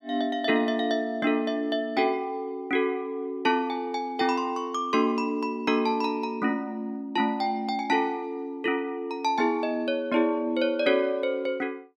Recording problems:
none

